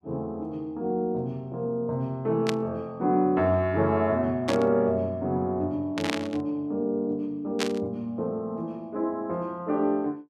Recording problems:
static burst; 4 times, first at 2.5 s; peak +3 dB vs average level

